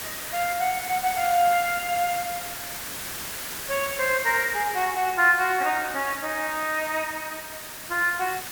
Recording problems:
hiss; SNR 9 dB
crackling; at 2 s; loose cable, SNR 27 dB

